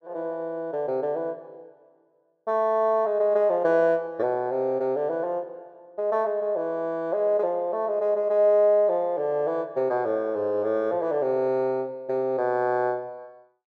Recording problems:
none

